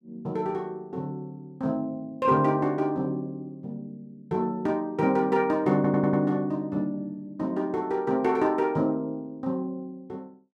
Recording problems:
stutter; at 6 s

